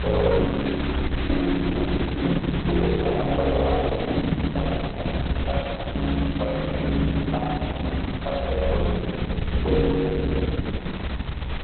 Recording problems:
codec artefacts; Opus, log-spectral distance 12 dB, nothing above 3.9 kHz
background hiss; SNR 9 dB
low-frequency rumble; below 70 Hz, strongest tone 68 Hz, SNR 5 dB
crackling; from 4 to 6.5 s; loose cable, SNR 22 dB
microphone thump; at 5.5 s; peak -1 dB vs average level

